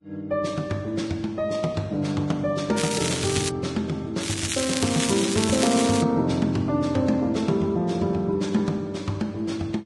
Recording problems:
lossy compression; Vorbis, log-spectral distance 5 dB
crackling; at 3 s and from 4 to 6 s; loose cable, SNR 3 dB

